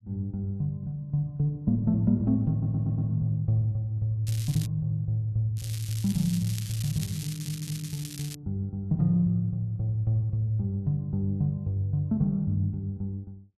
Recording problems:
audio stuttering; at 2.5 s and at 7 s
crackling; at 4.5 s and from 5.5 to 8.5 s; loose cable, SNR 12 dB

